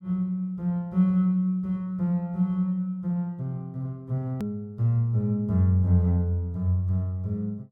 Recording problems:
hard cut with a click; at 4.5 s

